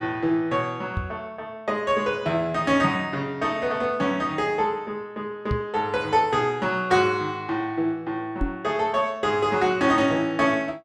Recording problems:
microphone thump; at 1 s, at 5.5 s and at 8.5 s; peak +1 dB vs average level

